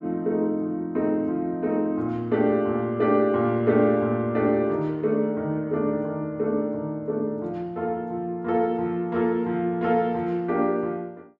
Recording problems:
none

